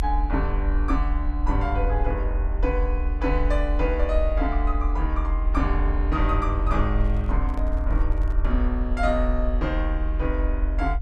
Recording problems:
rumble; below 62 Hz, strongest tone 42 Hz, SNR -2 dB
microphone handling noise; from 7 to 8.5 s; peak -10 dB vs average level

